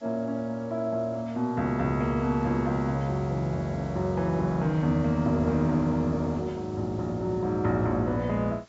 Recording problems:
treble missing; nothing above 8 kHz
background hiss; slope -1 dB per octave, SNR 27 dB

